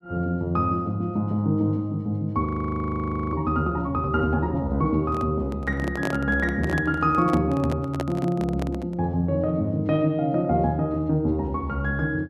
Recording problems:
frozen audio; at 2.5 s for 1 s
microphone handling noise; from 5 to 9 s; peak 0 dB vs average level

